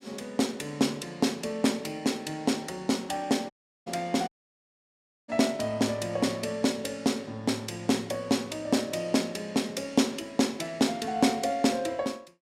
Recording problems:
dropout; at 3.5 s and at 4.5 s for 1 s

